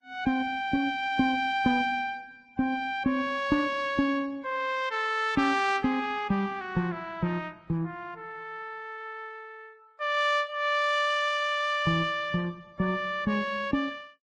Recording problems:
lossy compression; Opus, then Vorbis, log-spectral distance 2 dB

